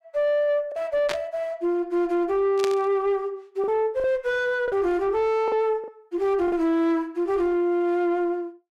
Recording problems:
distorted audio; soft clipping, signal-to-distortion ratio 9 dB
lost packets; 3% of the sound replaced, filled with the last packet
burst of static; at 1 s and at 2.5 s; peak -1 dB vs average level

